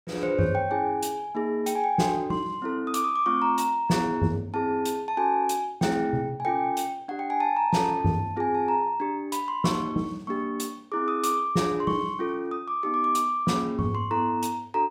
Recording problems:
none

